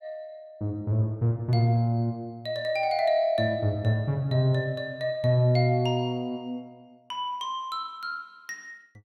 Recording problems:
none

